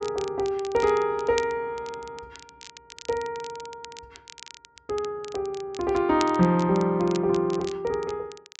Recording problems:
treble cut off; nothing above 8 kHz
crackling; vinyl, SNR 18 dB

